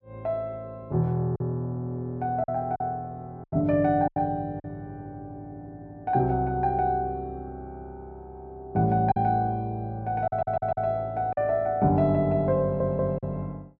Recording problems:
packet loss; 4% of the sound replaced, filled with silence
audio stuttering; at 10 s and at 13 s

